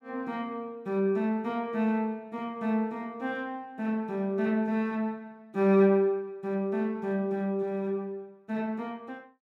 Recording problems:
none

